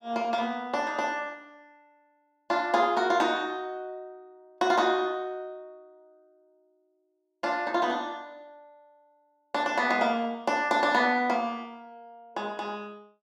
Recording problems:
none

